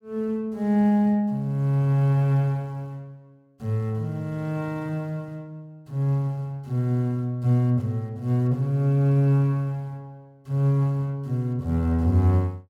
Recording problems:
none

